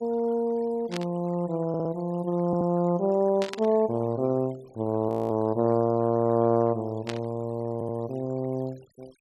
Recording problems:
denoising artefacts; signal-to-artefact ratio 27 dB
static burst; at 1 s, at 3.5 s and at 7 s; peak -4 dB vs average level
stutter; at 1.5 s, at 2.5 s and at 7.5 s
audio freezing; at 5 s

